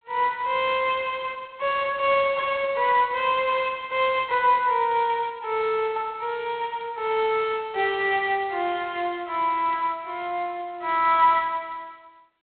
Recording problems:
phone line; 340 Hz to 3.8 kHz, G.726

